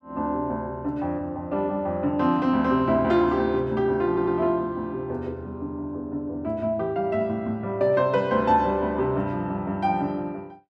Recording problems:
stutter; at 4 s

